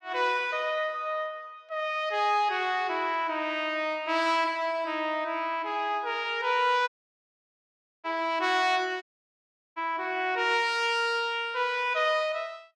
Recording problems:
audio cutting out; at 7 s for 1 s and at 9 s for 0.5 s

